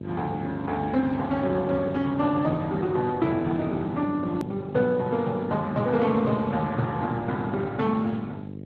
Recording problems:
codec artefacts; Speex, then Opus, log-spectral distance 3 dB
mains hum; 50 Hz, harmonics up to 600 Hz, SNR 12 dB
hard cut with a click; at 4.5 s

